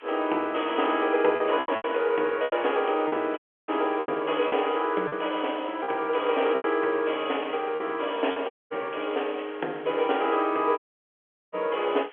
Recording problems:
telephone audio; 340 Hz to 3.3 kHz, G.711
background hiss; SNR 24 dB
lost packets; 6% of the sound replaced, filled with repeated pitch periods
dropout; at 3.5 s, at 8.5 s and at 11 s for 0.5 s

